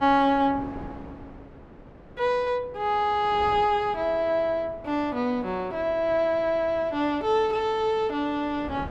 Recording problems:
wind noise; below 590 Hz, SNR 19 dB

